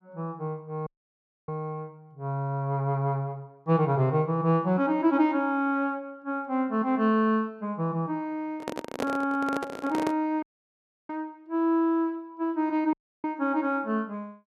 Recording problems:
dropout; at 1 s for 0.5 s, at 10 s for 0.5 s and at 13 s
microphone handling noise; from 8.5 to 10 s; peak +1 dB vs average level

